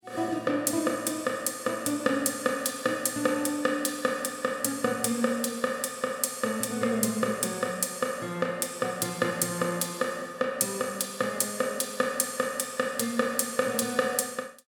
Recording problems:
none

